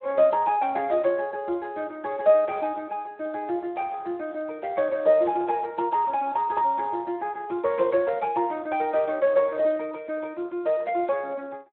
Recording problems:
phone line; 220 Hz to 3.7 kHz, Speex

